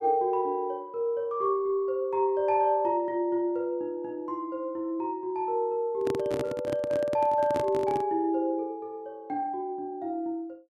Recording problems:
microphone handling noise; from 6 to 8 s; peak 0 dB vs average level

